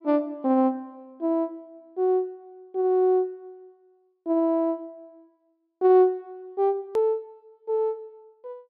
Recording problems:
treble missing; nothing above 5.5 kHz
edit click; at 7 s

